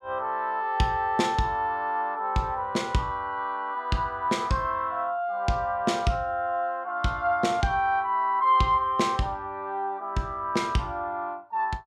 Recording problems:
none

